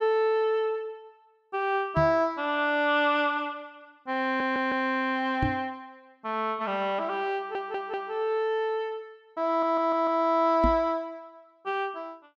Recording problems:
microphone thump; at 2 s, at 5.5 s and at 11 s; peak +3 dB vs average level
stutter; at 4.5 s, at 7.5 s and at 9.5 s

